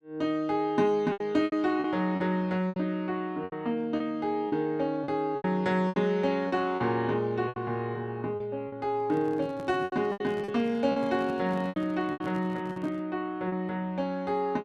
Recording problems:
packet loss; 10% of the sound replaced, filled with repeated pitch periods
handling noise; from 9 to 13 s; peak -7 dB vs average level

